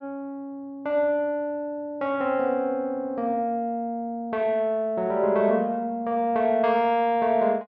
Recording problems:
none

